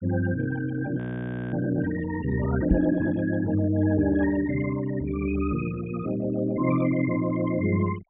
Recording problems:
treble cut off; nothing above 3.7 kHz
noise reduction artefacts; signal-to-artefact ratio 16 dB
frozen audio; at 1 s for 0.5 s
microphone bump; at 2.5 s; peak +5 dB vs average level

